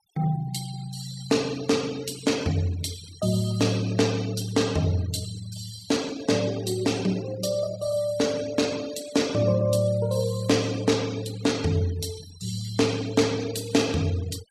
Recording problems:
denoising artefacts; signal-to-artefact ratio 17 dB

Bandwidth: 14.5 kHz